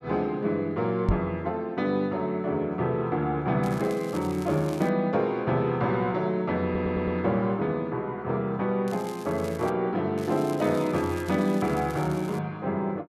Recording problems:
microphone bump; at 1 s; peak +5 dB vs average level
crackling; from 3.5 to 5 s, at 9 s and from 10 to 12 s; loose cable, SNR 20 dB
stutter; at 6.5 s

